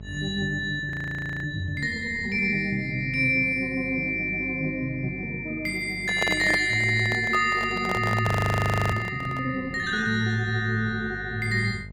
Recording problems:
electrical hum; 50 Hz, harmonics up to 650 Hz, SNR 18 dB
frozen audio; at 1 s for 0.5 s and at 8.5 s for 0.5 s
handling noise; from 6 to 9.5 s; peak 0 dB vs average level

